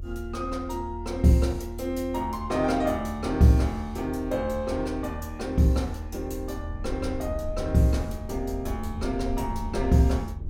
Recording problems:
rumble; below 82 Hz, SNR 10 dB

